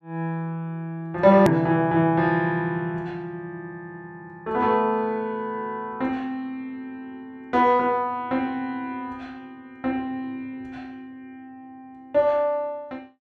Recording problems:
edit click; at 1.5 s

